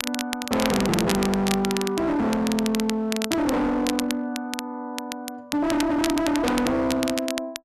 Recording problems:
distorted audio; hard clipping, signal-to-distortion ratio 6 dB
crackling; vinyl, SNR 8 dB

